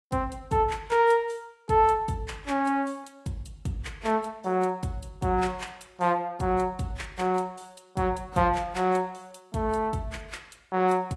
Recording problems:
codec artefacts; AAC, log-spectral distance 2 dB, nothing above 11.3 kHz

